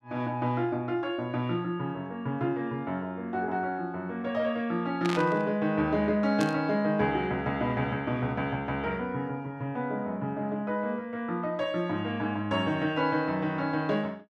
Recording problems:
static burst; at 5 s and at 6.5 s; peak -1 dB vs average level

